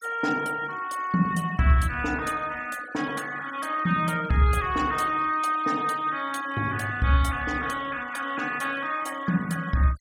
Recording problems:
denoising artefacts; signal-to-artefact ratio 19 dB

